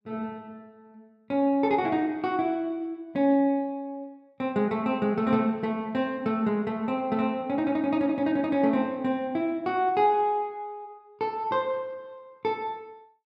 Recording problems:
none

